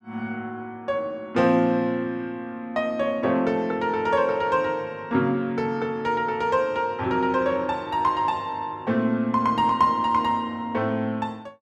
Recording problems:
none

